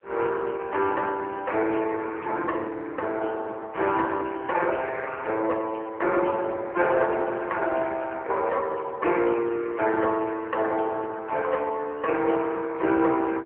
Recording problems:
phone line; 300 Hz to 3.1 kHz, AMR-NB

